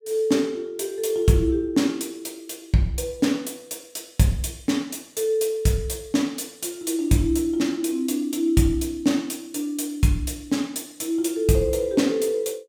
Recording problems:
none

